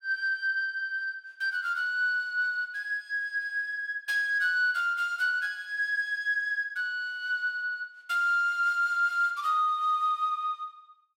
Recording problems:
none

